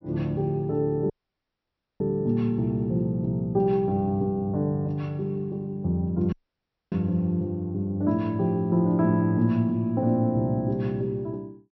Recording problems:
treble cut off; nothing above 5.7 kHz
dropout; at 1 s for 1 s and at 6.5 s for 0.5 s

